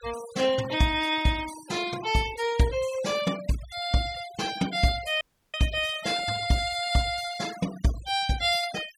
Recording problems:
denoising artefacts; signal-to-artefact ratio 16 dB
audio cutting out; at 5 s

